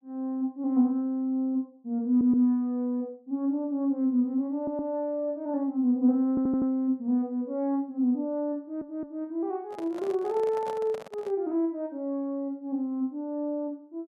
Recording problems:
audio stuttering; 4 times, first at 2 s
handling noise; from 9.5 to 11 s; peak -8 dB vs average level

